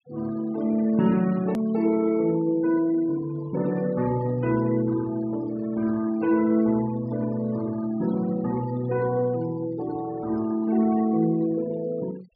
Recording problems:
low-pass filter; nothing above 5.5 kHz
noise reduction artefacts; signal-to-artefact ratio 20 dB
hard cut with a click; at 1.5 s

